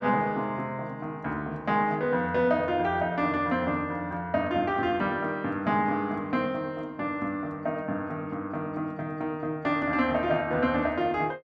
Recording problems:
none

